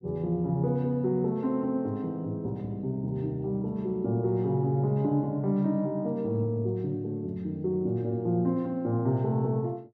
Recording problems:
none

